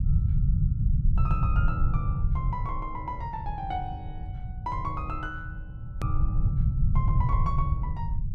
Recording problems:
low-frequency rumble; below 120 Hz, SNR -7 dB
click at an edit; at 6 s

